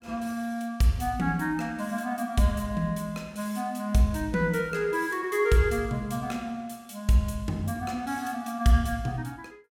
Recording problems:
none

